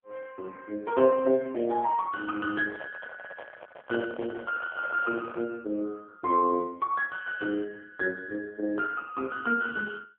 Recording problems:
telephone audio; 220 Hz to 2.1 kHz, AMR-NB
microphone handling noise; from 2.5 to 5.5 s; peak -4 dB vs average level

